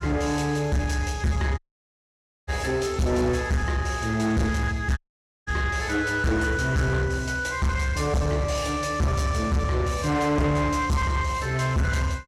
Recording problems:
distortion; soft clipping, signal-to-distortion ratio 7 dB
audio cutting out; at 1.5 s for 1 s and at 5 s

